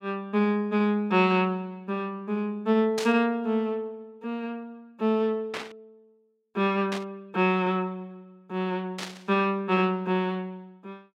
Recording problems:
burst of static; 4 times, first at 3 s; peak -2 dB vs average level

